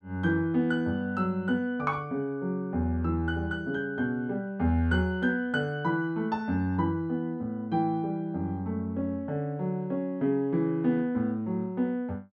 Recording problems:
none

